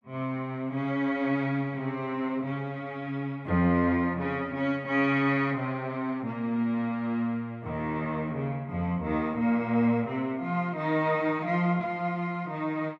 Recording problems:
none

